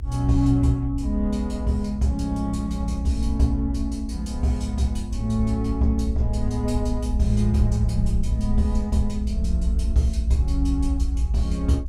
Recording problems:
mains hum; 50 Hz, harmonics up to 900 Hz, SNR 29 dB
low-frequency rumble; below 66 Hz, strongest tone 58 Hz, SNR 2 dB

